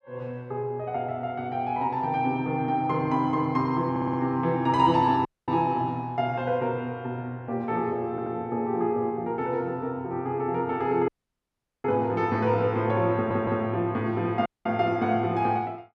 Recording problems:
stutter; at 4 s, at 8 s and at 13 s
audio cutting out; at 5.5 s, at 11 s for 1 s and at 14 s

